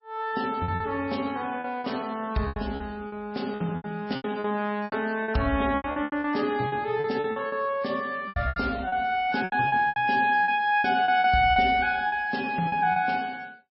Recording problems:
lossy compression; MP3, log-spectral distance 3 dB, nothing above 5.5 kHz
lost packets; 14% of the sound replaced, filled with repeated pitch periods

